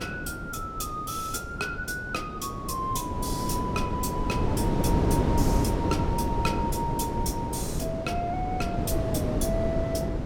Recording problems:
wind on the microphone; below 380 Hz, SNR -2 dB

